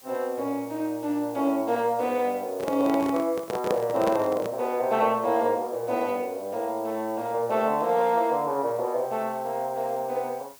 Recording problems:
background hiss; slope 0 dB per octave, SNR 22 dB
microphone handling noise; from 2.5 to 4.5 s; peak +3 dB vs average level

